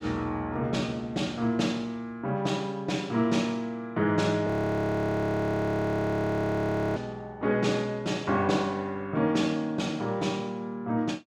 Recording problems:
audio freezing; at 4.5 s for 2.5 s

